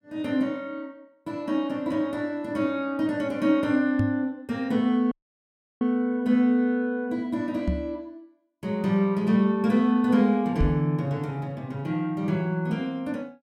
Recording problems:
microphone thump; at 4 s, at 7.5 s and at 11 s; peak +4 dB vs average level
dropout; at 5 s for 0.5 s

